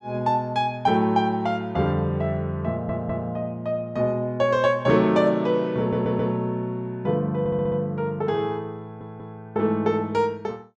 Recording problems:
stutter; 4 times, first at 2.5 s

